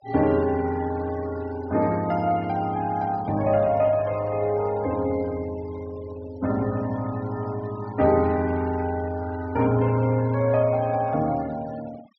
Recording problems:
treble missing; nothing above 6 kHz
denoising artefacts; signal-to-artefact ratio 21 dB

